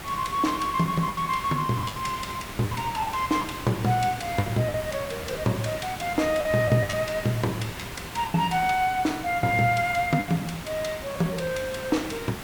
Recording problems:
background hiss; SNR 10 dB
lost packets; 8% of the sound replaced, filled with the last packet

